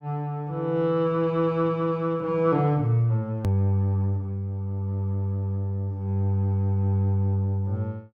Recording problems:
hard cut with a click; at 3.5 s

